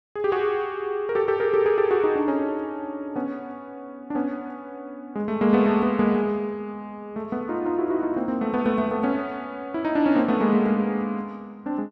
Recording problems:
none

